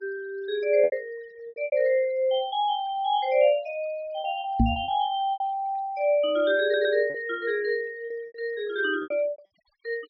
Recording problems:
treble missing; nothing above 5.5 kHz
denoising artefacts; signal-to-artefact ratio 26 dB
packet loss; 9% of the sound replaced, filled with repeated pitch periods
microphone bump; at 4.5 s; peak +8 dB vs average level
stutter; at 6.5 s

